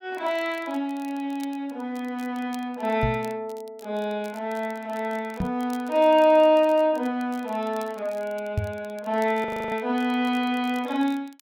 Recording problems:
crackle; vinyl, SNR 26 dB
microphone bump; at 3 s, at 5.5 s and at 8.5 s; peak +3 dB vs average level
audio freezing; at 9.5 s

